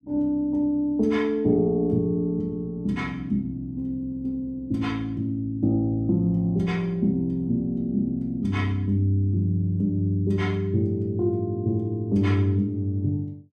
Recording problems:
none

